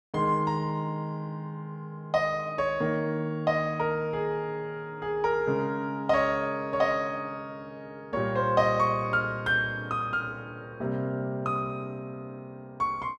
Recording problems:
none

